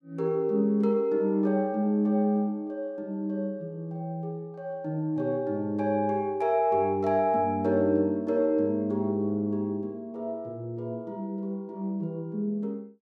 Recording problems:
none

